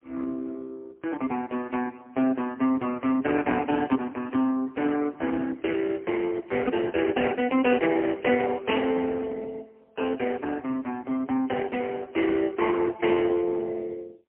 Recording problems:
phone line; 220 Hz to 3.3 kHz, AMR-NB, then MP3

